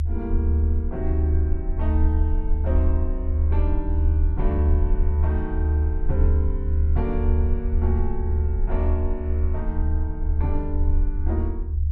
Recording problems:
low-frequency rumble; below 76 Hz, SNR -8 dB

